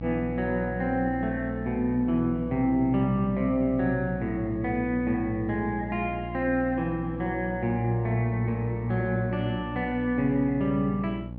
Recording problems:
hum; 60 Hz, harmonics up to 900 Hz, SNR 9 dB

